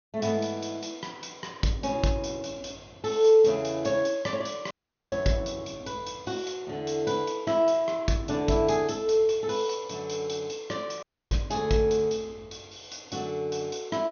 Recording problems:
low-pass filter; nothing above 6.6 kHz
audio cutting out; at 4.5 s and at 11 s

